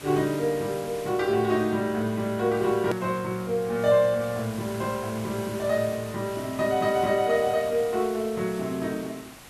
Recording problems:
hiss; slope -2 dB per octave, SNR 16 dB
edit click; at 3 s

